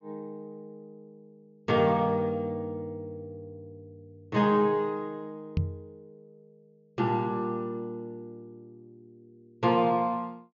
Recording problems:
treble missing; nothing above 7.3 kHz
microphone bump; at 5.5 s; peak +4 dB vs average level

